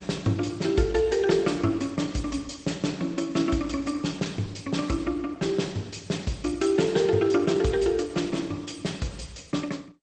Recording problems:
lossy codec; MP2, then Opus, log-spectral distance 5 dB, nothing above 8.5 kHz

